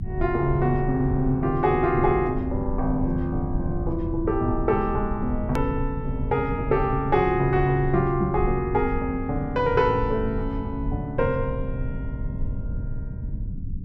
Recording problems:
low-frequency rumble; below 110 Hz, SNR 8 dB
click at an edit; at 5.5 s

